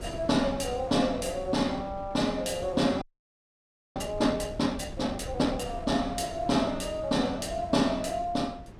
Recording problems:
wind noise; below 290 Hz, SNR 14 dB
frozen audio; at 3 s for 1 s

